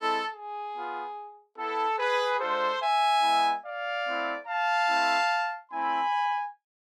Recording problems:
none

